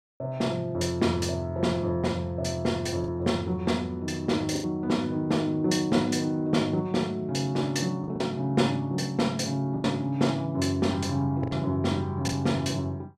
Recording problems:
lost packets; 3% of the sound replaced, filled with the last packet

